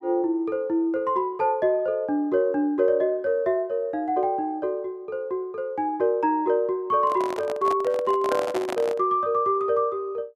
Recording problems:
handling noise; from 7 to 9 s; peak -2 dB vs average level

